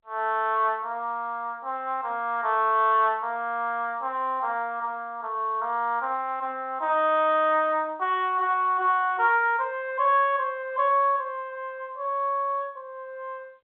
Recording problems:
phone line; 260 Hz to 3.7 kHz, G.711

